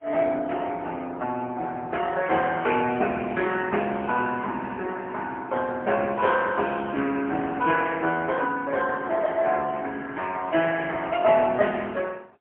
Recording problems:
phone line; 280 Hz to 3.2 kHz, AMR-NB, then MP3

